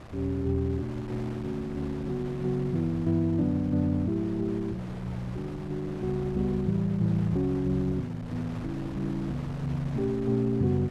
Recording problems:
wind on the microphone; below 670 Hz, SNR 13 dB

